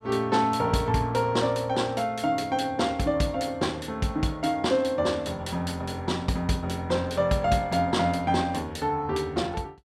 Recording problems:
none

